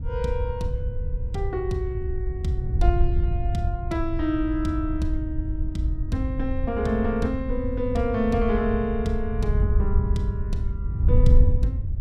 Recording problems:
wind noise; below 84 Hz, SNR -1 dB

